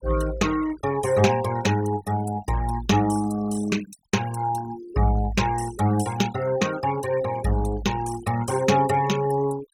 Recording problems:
denoising artefacts; signal-to-artefact ratio 14 dB

